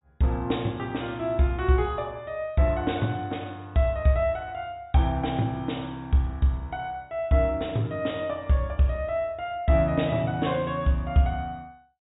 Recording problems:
treble missing; nothing above 4 kHz

